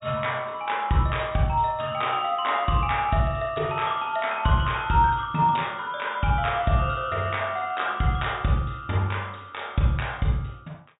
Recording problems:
treble cut off; nothing above 4 kHz

